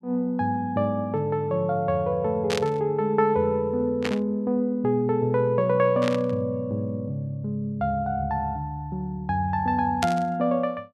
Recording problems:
burst of static; 4 times, first at 2.5 s; peak 0 dB vs average level

